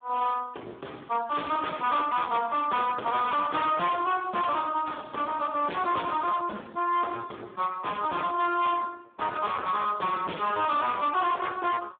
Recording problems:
phone line; 300 Hz to 3.6 kHz, Speex
distorted audio; hard clipping, uneven, signal-to-distortion ratio 8 dB

